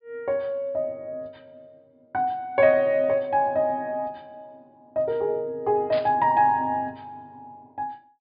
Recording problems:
low-pass filter; nothing above 5 kHz
static burst; at 6 s; peak -9 dB vs average level

